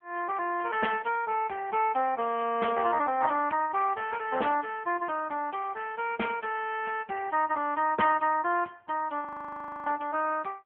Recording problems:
telephone audio; 320 Hz to 3.1 kHz, AMR-NB
audio freezing; at 9.5 s for 0.5 s

